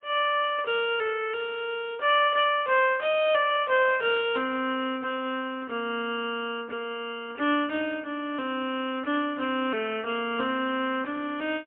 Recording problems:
telephone audio; 280 Hz to 3.4 kHz, AMR-NB, then MP3

